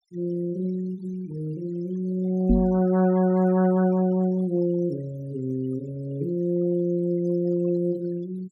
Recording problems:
denoising artefacts; signal-to-artefact ratio 23 dB
microphone bump; at 2.5 s; peak +7 dB vs average level

